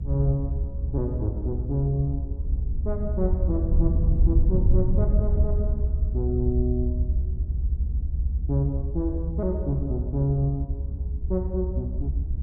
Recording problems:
low-frequency rumble; below 74 Hz, SNR -2 dB

